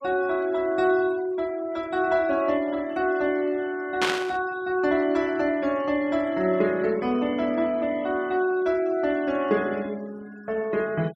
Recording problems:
noise reduction artefacts; signal-to-artefact ratio 24 dB
static burst; at 4 s; peak +3 dB vs average level

